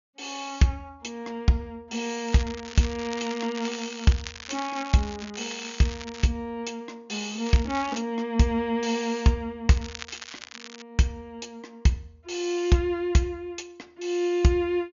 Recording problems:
treble cut off; nothing above 7.1 kHz
crackling; from 2.5 to 6.5 s, at 7.5 s and from 9.5 to 11 s; loose cable, SNR 13 dB

